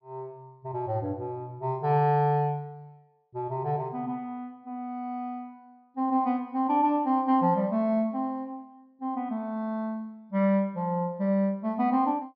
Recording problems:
low-pass filter; nothing above 5.4 kHz

